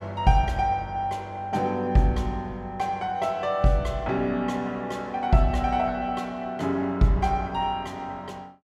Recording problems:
none

